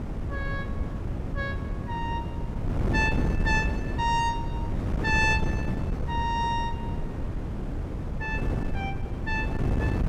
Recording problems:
wind noise; below 220 Hz, SNR 1 dB

